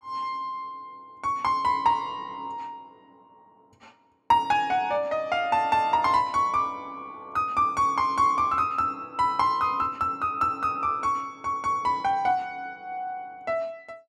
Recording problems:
none

